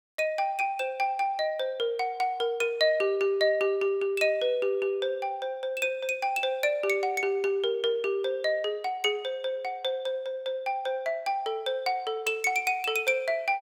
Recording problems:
none

